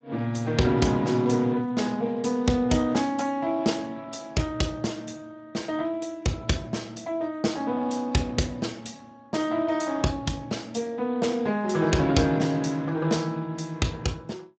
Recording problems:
codec artefacts; Speex, log-spectral distance 4 dB, nothing above 7.6 kHz

